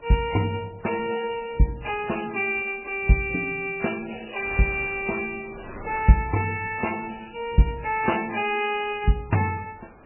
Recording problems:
lossy compression; MP3, log-spectral distance 9 dB, nothing above 2.4 kHz
wind noise; below 1.2 kHz, SNR 22 dB

